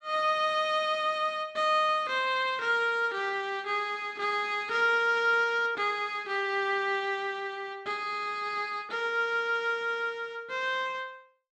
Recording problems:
none

